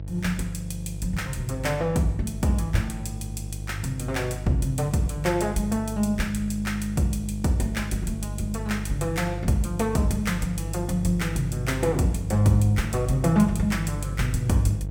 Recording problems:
hum; 50 Hz, harmonics up to 500 Hz, SNR 7 dB

